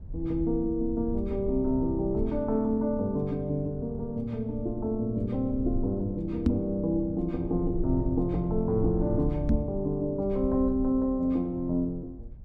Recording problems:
low-frequency rumble; below 72 Hz, SNR 11 dB
microphone thump; at 6.5 s and at 9.5 s; peak +7 dB vs average level

